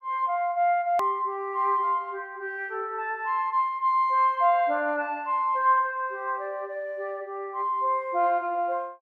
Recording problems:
edit click; at 1 s

